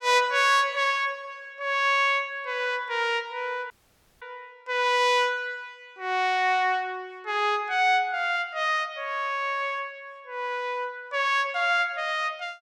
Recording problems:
audio cutting out; at 3.5 s for 0.5 s

